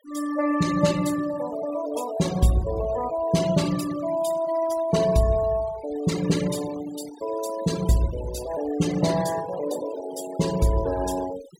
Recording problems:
noise reduction artefacts; signal-to-artefact ratio 15 dB

